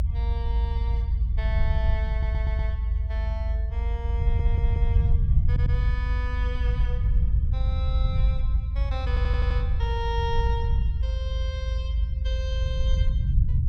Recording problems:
rumble; below 78 Hz, SNR -11 dB
stutter; 4 times, first at 2 s

